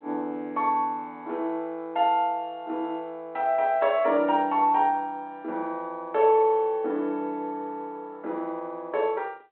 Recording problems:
phone line; 260 Hz to 3.4 kHz, G.726

